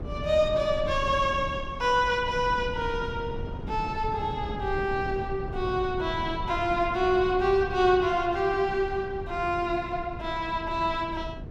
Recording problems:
wind noise; below 210 Hz, SNR 11 dB

